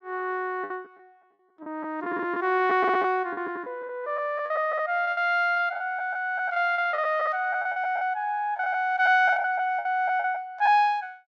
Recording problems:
lost packets; 11% of the sound replaced, filled with the last packet

